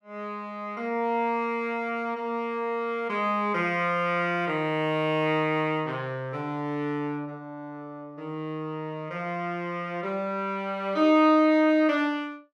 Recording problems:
none

